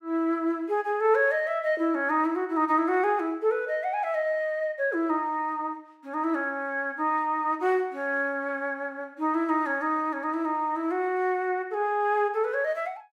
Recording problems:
none

